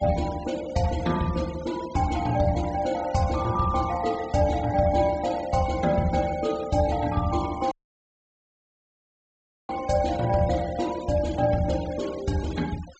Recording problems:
treble missing; nothing above 8 kHz
noise reduction artefacts; signal-to-artefact ratio 18 dB
audio cutting out; at 7.5 s for 2 s

